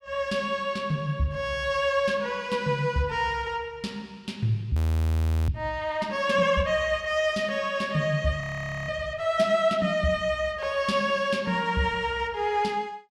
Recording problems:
frozen audio; at 5 s for 0.5 s and at 8.5 s

